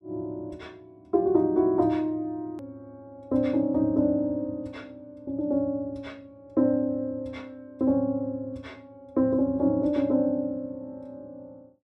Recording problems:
edit click; at 2.5 s

